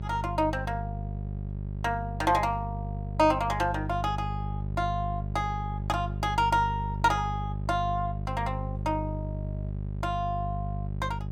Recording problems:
hum; 50 Hz, harmonics up to 450 Hz, SNR 4 dB

